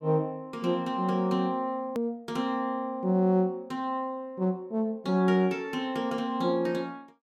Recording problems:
hard cut with a click; at 2 s

